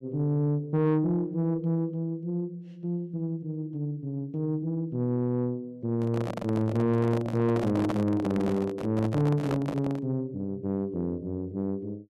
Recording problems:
distorted audio; soft clipping, signal-to-distortion ratio 10 dB
microphone handling noise; from 6 to 10 s; peak +2 dB vs average level

